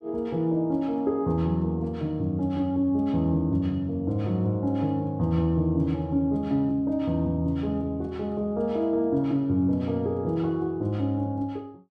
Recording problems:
none

